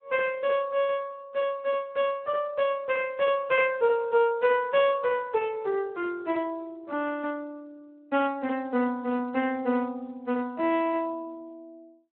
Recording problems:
telephone audio; 260 Hz to 3.5 kHz, Speex

